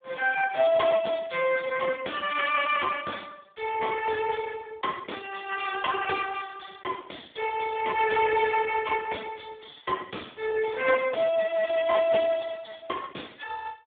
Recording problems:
phone line; 320 Hz to 3.3 kHz, Speex

